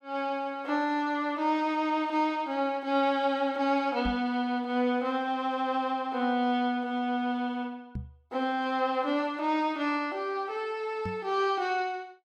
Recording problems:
microphone thump; at 4 s, at 8 s and at 11 s; peak -3 dB vs average level

